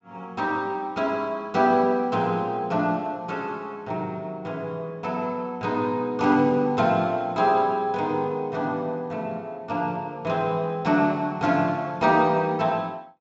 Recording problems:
treble cut off; nothing above 8 kHz

